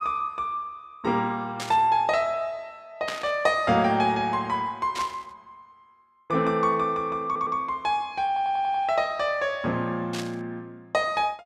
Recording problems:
static burst; 4 times, first at 1.5 s; peak -2 dB vs average level
audio stuttering; at 7.5 s and at 8.5 s

